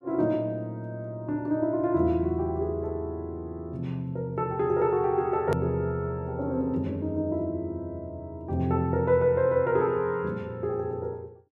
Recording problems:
edit click; at 5.5 s

